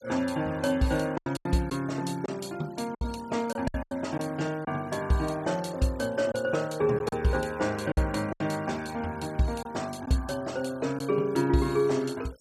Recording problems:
denoising artefacts; signal-to-artefact ratio 22 dB
packet loss; 5% of the sound replaced, filled with silence

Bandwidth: 14.5 kHz